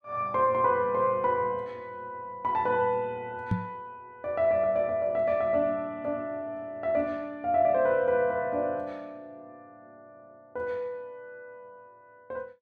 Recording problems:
knock on the microphone; at 3.5 s; peak +4 dB vs average level

